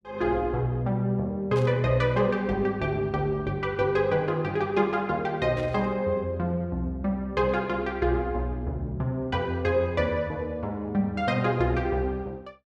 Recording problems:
static burst; at 1.5 s and at 5.5 s; peak -11 dB vs average level

